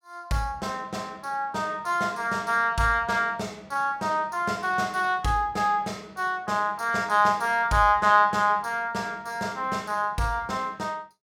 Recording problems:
none

